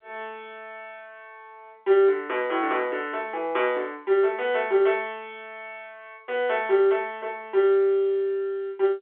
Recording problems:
phone line; 340 Hz to 3.5 kHz, G.711

